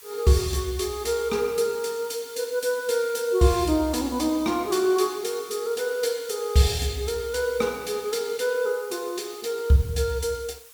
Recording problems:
hiss; slope +2 dB per octave, SNR 19 dB

